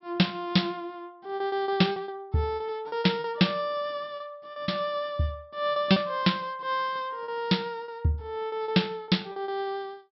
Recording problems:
treble cut off; nothing above 5.6 kHz
lost packets; 8% of the sound replaced, filled with repeated pitch periods

